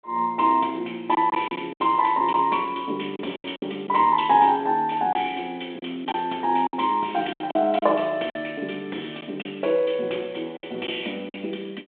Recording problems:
phone line; 240 Hz to 3.6 kHz, G.726
lost packets; 7% of the sound replaced, filled with silence

